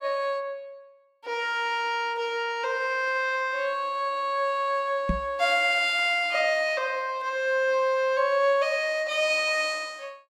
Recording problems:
microphone bump; at 5 s; peak +2 dB vs average level

